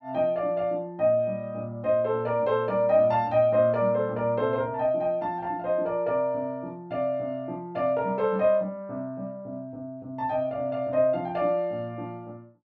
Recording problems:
none

